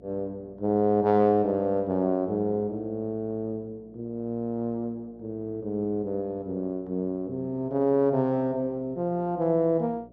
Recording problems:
electrical hum; 60 Hz, harmonics up to 720 Hz, SNR 26 dB

